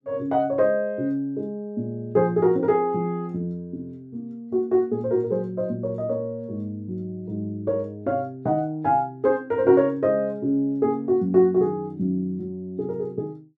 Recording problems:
none

